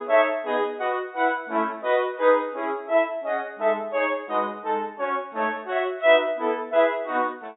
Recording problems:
treble missing; nothing above 4 kHz

